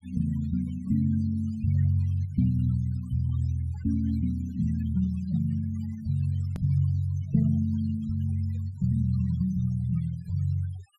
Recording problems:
denoising artefacts; signal-to-artefact ratio 23 dB
hard cut with a click; at 6.5 s

